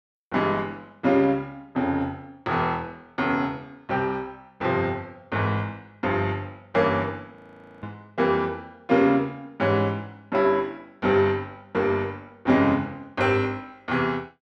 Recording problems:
audio freezing; at 7.5 s

